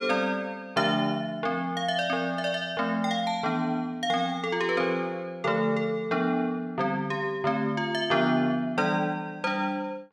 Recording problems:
none

